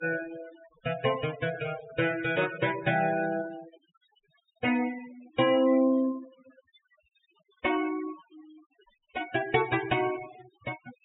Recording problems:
treble missing; nothing above 4 kHz
denoising artefacts; signal-to-artefact ratio 15 dB

